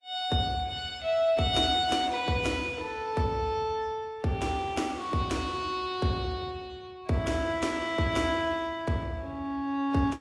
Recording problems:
lossy compression; AAC, log-spectral distance 2 dB

